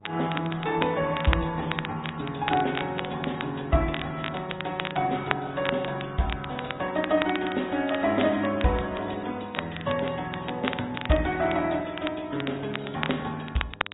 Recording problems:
low-pass filter; nothing above 3.8 kHz
codec artefacts; Opus, then MP3, log-spectral distance 7 dB
mains hum; 50 Hz, harmonics up to 1.2 kHz, SNR 24 dB
crackling; vinyl, SNR 8 dB

